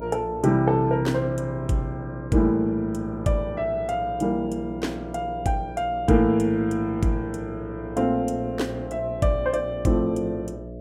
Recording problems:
hum; 60 Hz, harmonics up to 660 Hz, SNR 13 dB

